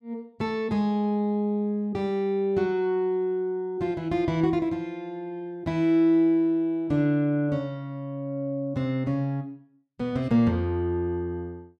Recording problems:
none

